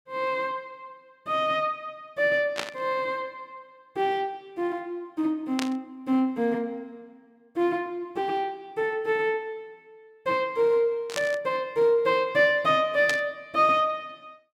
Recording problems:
burst of static; 4 times, first at 2.5 s; peak +1 dB vs average level

